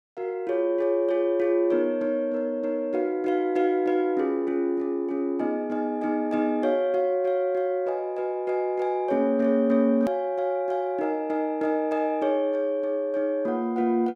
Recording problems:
edit click; at 10 s

